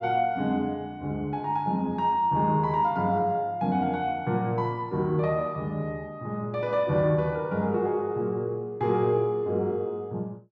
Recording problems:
none

